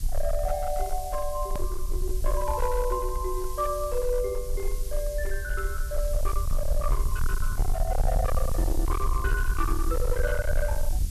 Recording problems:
distorted audio; hard clipping, signal-to-distortion ratio 7 dB
background hiss; slope +5 dB per octave, SNR 11 dB
rumble; below 52 Hz, strongest tone 24 Hz, SNR 0 dB
edit click; at 1.5 s

